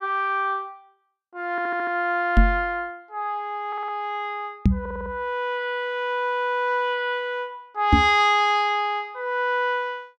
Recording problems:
stutter; at 1.5 s, at 3.5 s and at 5 s
knock on the microphone; at 2.5 s, at 4.5 s and at 8 s; peak +10 dB vs average level

